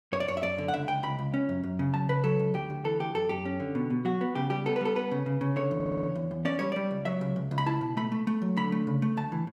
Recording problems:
stutter; at 6 s

